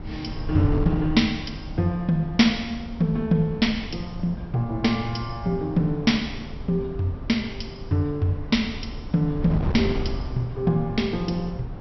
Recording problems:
treble cut off; nothing above 5.8 kHz
wind noise; below 170 Hz, SNR 9 dB

